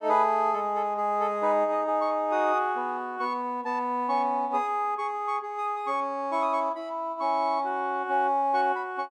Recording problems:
none

